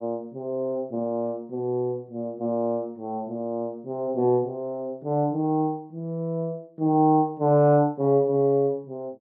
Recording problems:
none

